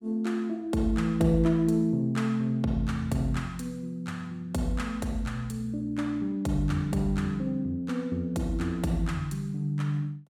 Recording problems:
none

